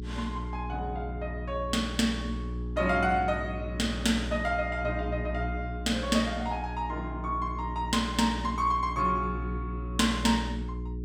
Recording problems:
electrical hum; 60 Hz, harmonics up to 420 Hz, SNR 6 dB

